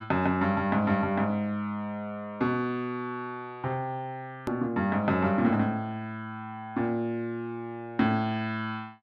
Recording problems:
edit click; at 4.5 s

